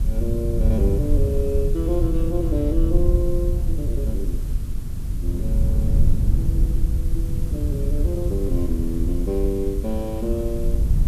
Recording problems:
background hiss; SNR 18 dB
low-frequency rumble; below 80 Hz, SNR -4 dB

